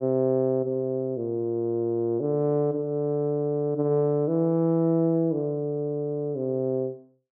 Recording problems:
none

